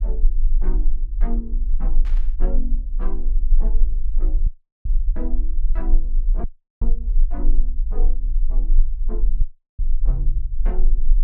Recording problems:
low-frequency rumble; below 32 Hz, strongest tone 20 Hz, SNR -14 dB
static burst; at 2 s; peak -3 dB vs average level
audio cutting out; at 4.5 s, at 6.5 s and at 9.5 s

